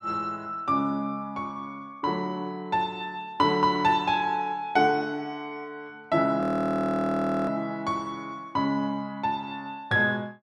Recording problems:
audio freezing; at 6.5 s for 1 s

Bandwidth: 12 kHz